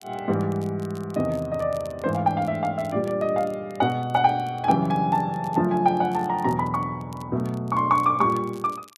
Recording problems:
crackling; vinyl, SNR 28 dB

